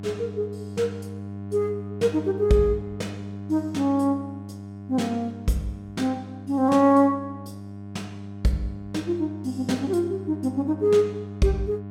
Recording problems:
hum; 50 Hz, harmonics up to 1.1 kHz, SNR 12 dB

